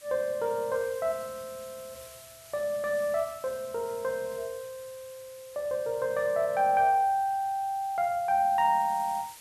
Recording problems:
background hiss; slope +1 dB per octave, SNR 20 dB

